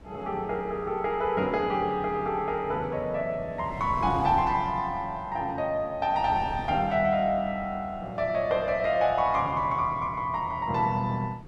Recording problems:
wind on the microphone; below 340 Hz, SNR 17 dB

